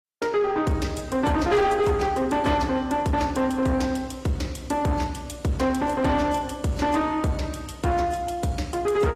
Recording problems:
codec artefacts; AAC, log-spectral distance 3 dB, nothing above 14.7 kHz
distorted audio; soft clipping, signal-to-distortion ratio 10 dB

